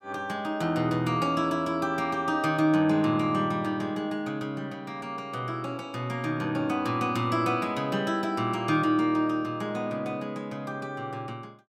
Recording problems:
none

